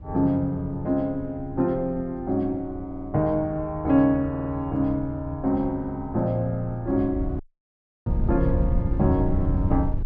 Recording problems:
wind on the microphone; below 110 Hz, SNR 6 dB
stutter; at 3 s and at 4.5 s
audio cutting out; at 7.5 s for 0.5 s

